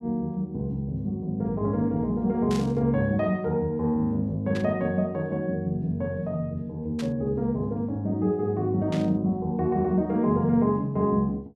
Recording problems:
static burst; 4 times, first at 2.5 s; peak -8 dB vs average level

